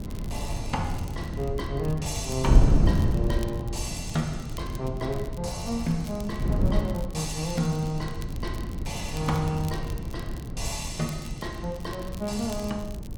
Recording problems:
wind on the microphone; below 150 Hz, SNR 0 dB
crackle; vinyl, SNR 18 dB

